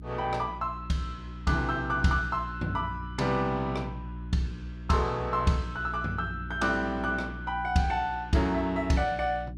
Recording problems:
mains hum; 60 Hz, harmonics up to 360 Hz, SNR 11 dB

